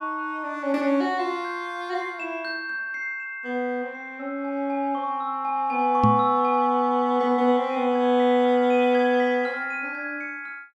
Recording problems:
knock on the microphone; at 6 s; peak +6 dB vs average level

